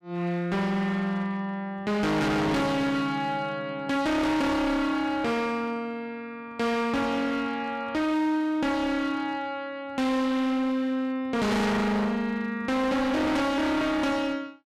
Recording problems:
distorted audio; hard clipping, signal-to-distortion ratio 6 dB

